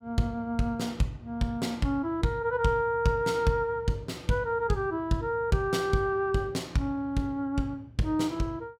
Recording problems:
none

